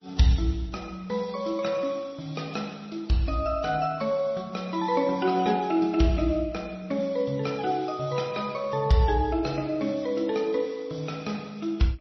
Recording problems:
codec artefacts; MP3, then AAC, log-spectral distance 4 dB, nothing above 5.8 kHz

